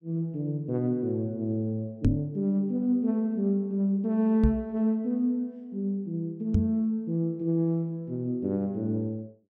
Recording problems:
knock on the microphone; at 2 s, at 4.5 s and at 6.5 s; peak +8 dB vs average level

